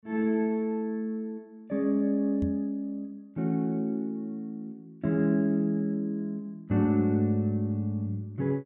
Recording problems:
microphone bump; at 2.5 s; peak -1 dB vs average level

